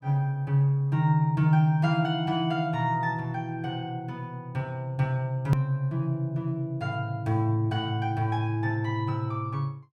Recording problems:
hard cut with a click; at 5.5 s

